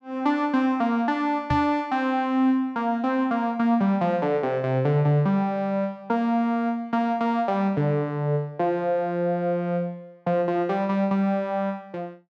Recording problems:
microphone bump; at 1.5 s; peak +1 dB vs average level

